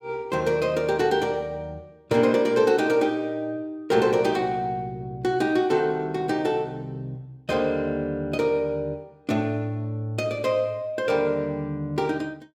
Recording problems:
none

